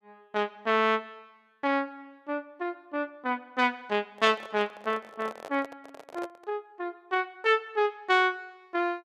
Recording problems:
microphone handling noise; from 4 to 6.5 s; peak -7 dB vs average level

